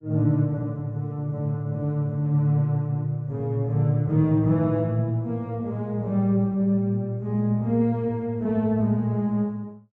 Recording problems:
treble missing; nothing above 8 kHz

